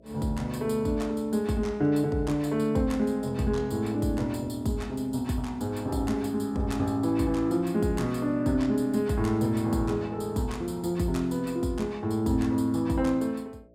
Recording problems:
electrical hum; 60 Hz, harmonics up to 660 Hz, SNR 30 dB

